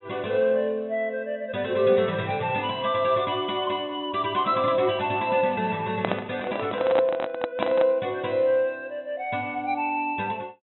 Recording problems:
treble cut off; nothing above 3.9 kHz
microphone handling noise; from 6 to 8 s; peak +2 dB vs average level

